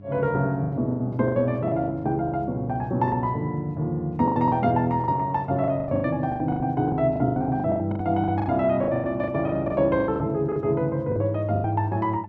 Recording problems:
hum; 50 Hz, harmonics up to 700 Hz, SNR 20 dB
packet loss; 17% of the sound replaced, filled with the last packet

